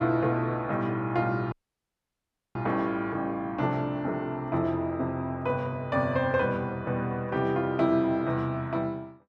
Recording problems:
dropout; at 1.5 s for 1 s

